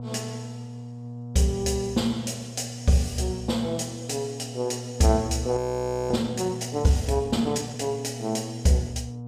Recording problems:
electrical hum; 60 Hz, harmonics up to 720 Hz, SNR 11 dB
audio freezing; at 5.5 s for 0.5 s

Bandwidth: 15.5 kHz